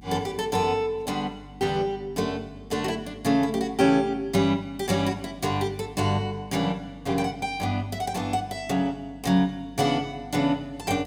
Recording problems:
mains hum; 50 Hz, harmonics up to 300 Hz, SNR 21 dB

